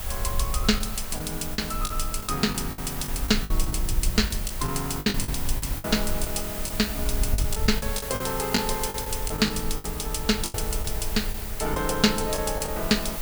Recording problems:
background hiss; SNR 7 dB
rumble; below 56 Hz, SNR 7 dB
lost packets; 10% of the sound replaced, filled with the last packet

